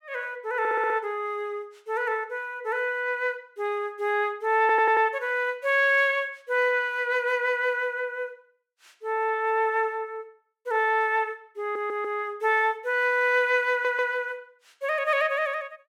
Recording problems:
audio stuttering; 4 times, first at 0.5 s

